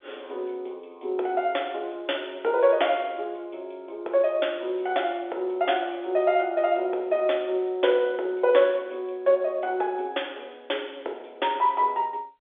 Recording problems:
phone line; 320 Hz to 3.6 kHz, G.711

